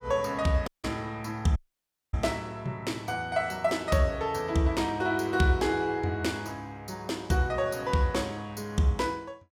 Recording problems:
dropout; at 0.5 s and at 1.5 s for 0.5 s

